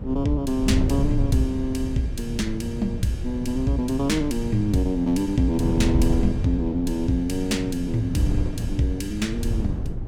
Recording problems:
electrical hum; 60 Hz, harmonics up to 600 Hz, SNR 19 dB
wind on the microphone; below 130 Hz, SNR 4 dB

